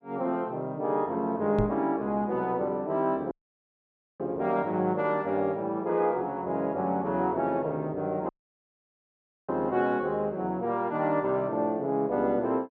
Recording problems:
microphone thump; at 1.5 s; peak +2 dB vs average level
audio cutting out; at 3.5 s for 1 s and at 8.5 s for 1 s

